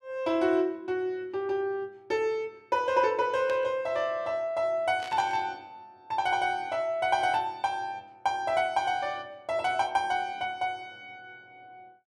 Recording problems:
burst of static; at 3.5 s and at 5 s; peak -10 dB vs average level

